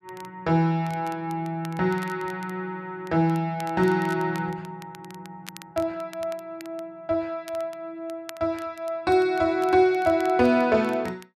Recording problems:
crackle; vinyl, SNR 23 dB

